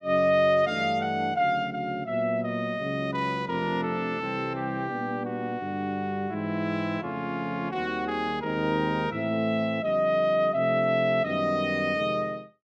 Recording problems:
none

